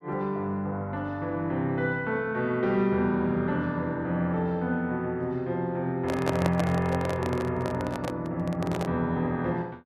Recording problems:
microphone handling noise; from 6 to 9 s; peak +4 dB vs average level

